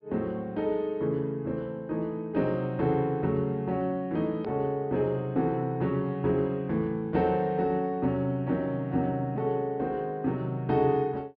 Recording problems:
treble cut off; nothing above 5.5 kHz
hard cut with a click; at 4.5 s

